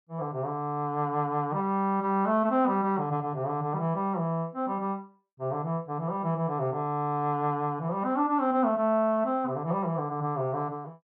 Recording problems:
none

